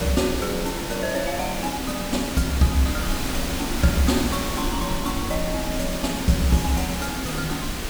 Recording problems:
hiss; slope -3 dB per octave, SNR 4 dB
rumble; below 70 Hz, SNR 11 dB

